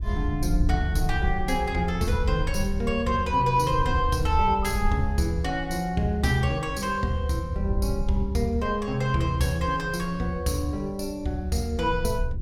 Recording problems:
wind noise; below 76 Hz, SNR 7 dB

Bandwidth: 16.5 kHz